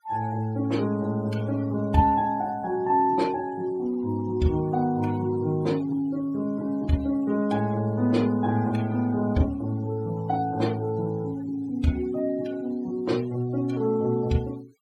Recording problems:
denoising artefacts; signal-to-artefact ratio 23 dB

